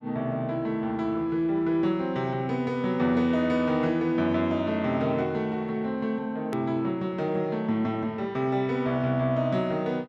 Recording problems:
edit click; at 6.5 s

